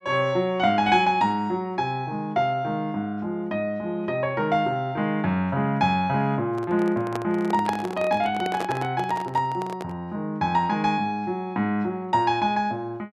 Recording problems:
handling noise; from 6.5 to 10 s; peak -1 dB vs average level

